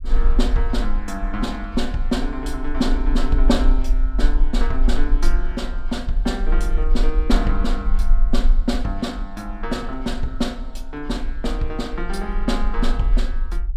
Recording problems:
low-frequency rumble; below 38 Hz, strongest tone 20 Hz, SNR -1 dB

